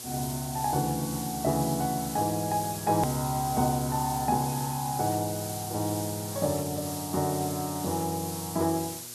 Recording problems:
hum; 60 Hz, harmonics up to 1.6 kHz, SNR 24 dB
hiss; SNR 7 dB
edit click; at 3 s

